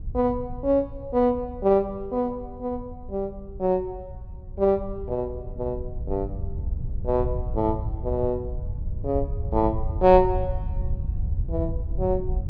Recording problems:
wind on the microphone; below 90 Hz, SNR 7 dB

